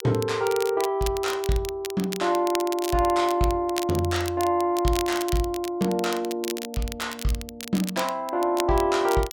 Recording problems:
crackling; vinyl, SNR 12 dB

